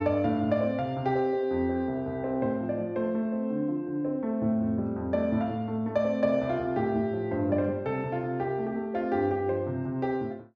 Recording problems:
none

